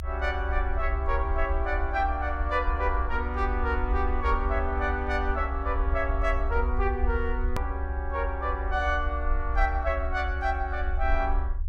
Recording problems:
low-frequency rumble; below 66 Hz, SNR 1 dB
hard cut with a click; at 7.5 s

